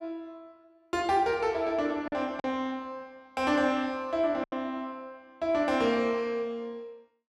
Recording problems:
lost packets; 3% of the sound replaced, filled with silence

